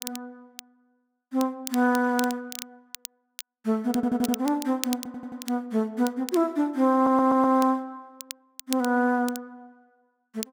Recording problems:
crackling; vinyl, SNR 14 dB
audio stuttering; at 4 s, at 5 s and at 7 s

